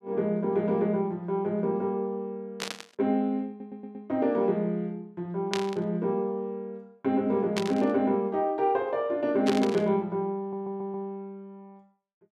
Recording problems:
static burst; 4 times, first at 2.5 s; peak +1 dB vs average level
audio stuttering; at 3.5 s and at 10 s

